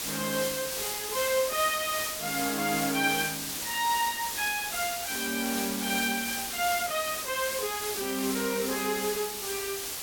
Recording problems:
background hiss; slope 0 dB per octave, SNR 2 dB

